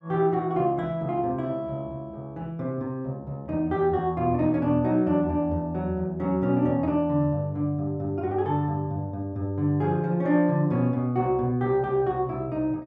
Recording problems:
none

